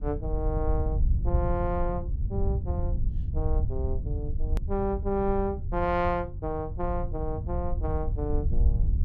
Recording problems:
low-frequency rumble; below 82 Hz, SNR -1 dB
edit click; at 4.5 s

